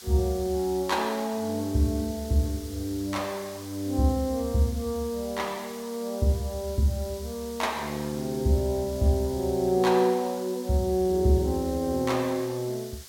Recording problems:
hiss; SNR 16 dB

